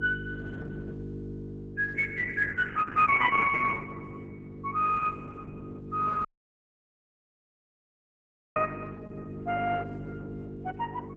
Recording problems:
codec artefacts; MP3, then Opus, log-spectral distance 4 dB
electrical hum; 50 Hz, harmonics up to 450 Hz, SNR 12 dB
audio cutting out; at 6.5 s for 2.5 s

